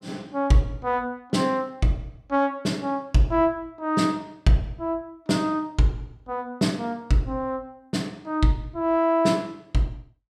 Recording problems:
none

